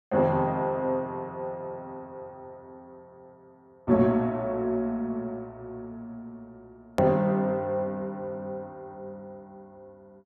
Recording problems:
edit click; at 7 s

